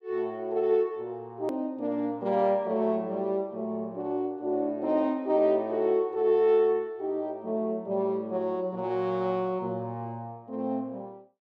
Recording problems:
edit click; at 1.5 s

